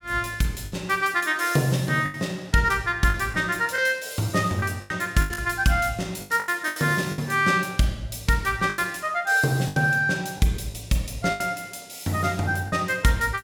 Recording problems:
lost packets; 8% of the sound replaced, filled with the last packet

